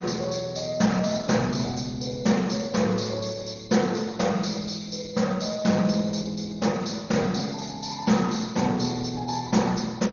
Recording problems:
lossy codec; Opus, then MP2, log-spectral distance 8 dB, nothing above 6.5 kHz

